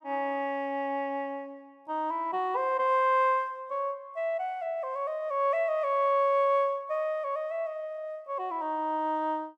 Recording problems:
none

